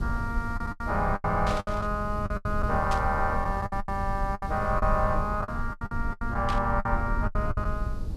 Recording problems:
hiss; SNR 22 dB
low-frequency rumble; below 92 Hz, SNR 4 dB
lost packets; 14% of the sound replaced, filled with the last packet
burst of static; at 1.5 s, at 3 s and at 6.5 s; peak -2 dB vs average level

